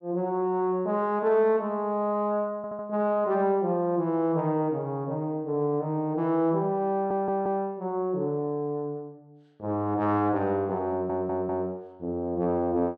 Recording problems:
audio stuttering; at 2.5 s, at 7 s and at 11 s

